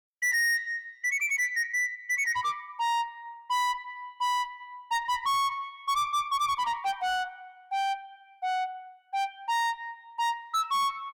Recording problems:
distorted audio; soft clipping, signal-to-distortion ratio 6 dB

